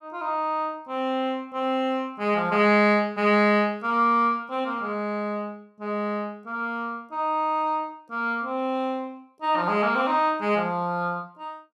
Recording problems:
none

